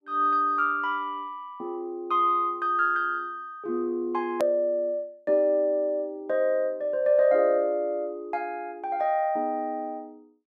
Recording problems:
click at an edit; at 4.5 s

